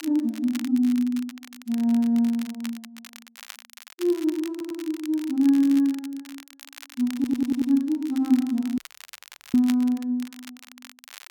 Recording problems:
crackle; vinyl, SNR 20 dB
audio stuttering; at 4.5 s and at 7 s
dropout; at 9 s for 1 s

